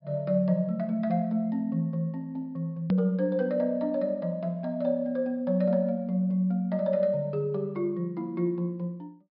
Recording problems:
low-pass filter; nothing above 5.5 kHz
hard cut with a click; at 3 s

